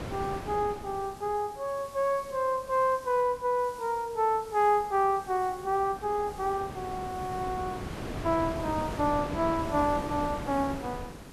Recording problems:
hiss; slope -1 dB per octave, SNR 23 dB
wind on the microphone; below 750 Hz, SNR 9 dB

